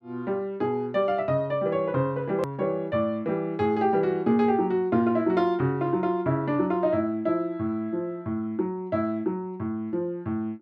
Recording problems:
edit click; at 2.5 s

